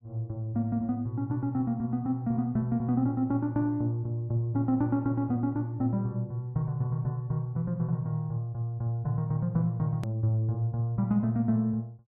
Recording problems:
low-pass filter; nothing above 5.5 kHz
click at an edit; at 10 s

